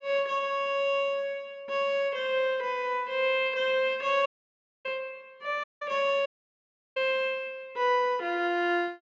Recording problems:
low-pass filter; nothing above 8 kHz
audio cutting out; at 4.5 s for 0.5 s, at 5.5 s and at 6.5 s for 0.5 s

